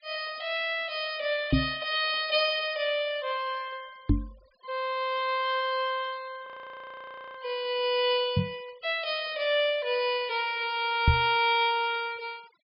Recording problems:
treble cut off; nothing above 5.5 kHz
denoising artefacts; signal-to-artefact ratio 25 dB
knock on the microphone; 4 times, first at 1.5 s; peak +9 dB vs average level
audio freezing; at 6.5 s for 1 s

